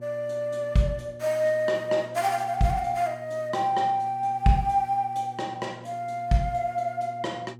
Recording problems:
hum; 60 Hz, harmonics up to 840 Hz, SNR 20 dB

